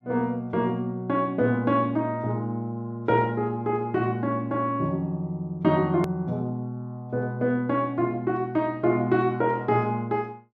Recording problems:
click at an edit; at 6 s

